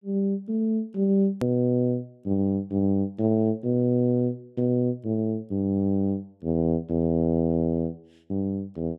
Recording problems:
edit click; at 1.5 s

